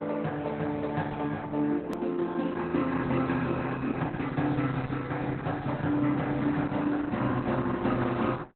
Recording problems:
lossy compression; Opus, log-spectral distance 3 dB, nothing above 13.1 kHz
edit click; at 2 s

